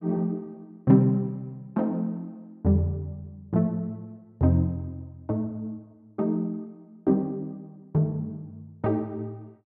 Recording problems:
none

